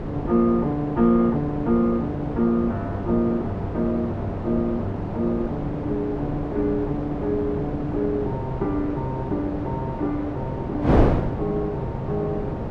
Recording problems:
wind noise; below 510 Hz, SNR 3 dB

